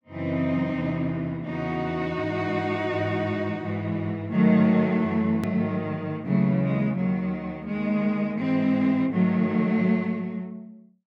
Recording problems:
edit click; at 5.5 s

